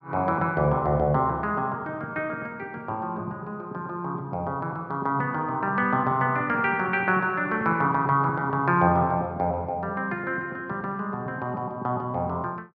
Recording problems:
none

